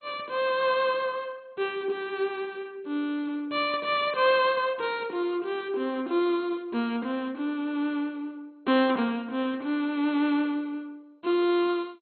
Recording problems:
lossy codec; MP2, log-spectral distance 2 dB, nothing above 4.1 kHz

